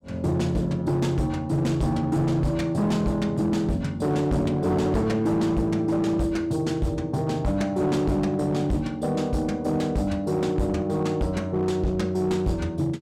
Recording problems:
distorted audio; hard clipping, signal-to-distortion ratio 11 dB

